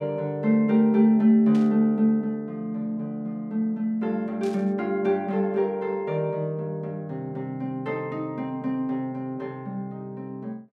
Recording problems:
burst of static; at 1.5 s and at 4.5 s; peak -15 dB vs average level

